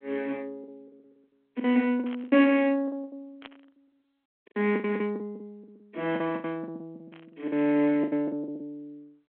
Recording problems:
phone line; 220 Hz to 3.3 kHz, G.726
lost packets; 17% of the sound replaced, filled with the last packet
burst of static; at 2 s, at 3.5 s and at 7 s; peak -12 dB vs average level

